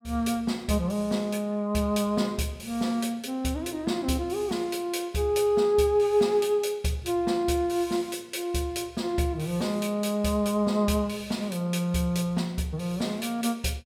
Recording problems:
none

